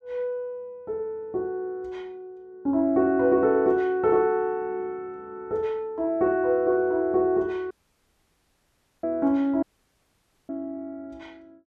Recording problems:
audio cutting out; at 7.5 s for 1.5 s and at 9.5 s for 1 s

